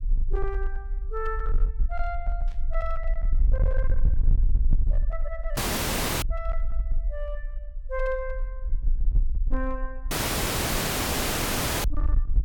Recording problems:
distorted audio; hard clipping, uneven, signal-to-distortion ratio 7 dB
low-frequency rumble; below 44 Hz, strongest tone 24 Hz, SNR -6 dB
burst of static; at 2.5 s and at 5.5 s; peak -15 dB vs average level
audio cutting out; at 5.5 s for 0.5 s and at 10 s for 1.5 s

